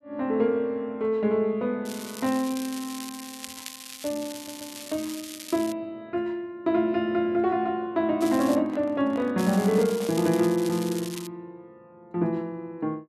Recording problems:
crackle; from 2 to 5.5 s, at 8 s and from 9.5 to 11 s; loose cable, SNR 13 dB
audio stuttering; at 4.5 s
handling noise; from 8.5 to 10 s; peak -11 dB vs average level

